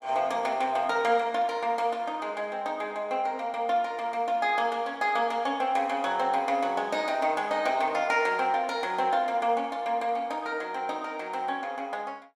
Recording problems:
none

